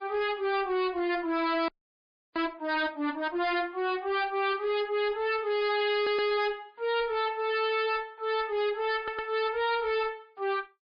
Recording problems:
lossy compression; MP3, log-spectral distance 2 dB, nothing above 4.1 kHz
distortion; hard clipping, uneven, signal-to-distortion ratio 6 dB
audio freezing; at 1.5 s for 0.5 s
stutter; at 6 s and at 9 s

